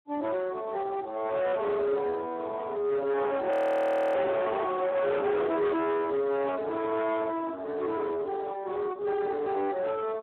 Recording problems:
phone line; 950 Hz to 3.3 kHz, Speex
distortion; soft clipping, signal-to-distortion ratio 6 dB
audio freezing; at 3.5 s for 0.5 s

